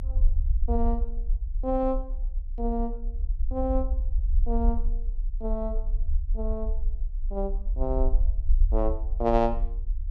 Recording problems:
low-frequency rumble; below 50 Hz, strongest tone 28 Hz, SNR -1 dB

